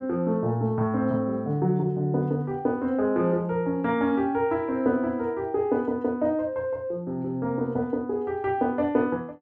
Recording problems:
none

